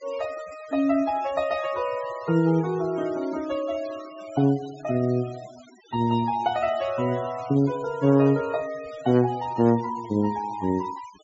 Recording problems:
treble missing; nothing above 8 kHz
denoising artefacts; signal-to-artefact ratio 20 dB

